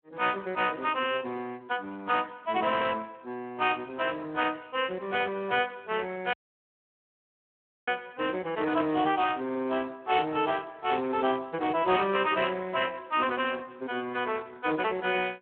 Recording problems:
telephone audio; 260 Hz to 3.1 kHz, Speex
dropout; at 6.5 s for 1.5 s

